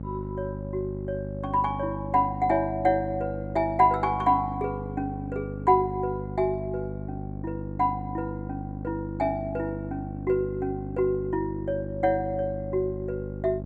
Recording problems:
hum; 50 Hz, harmonics up to 850 Hz, SNR 8 dB

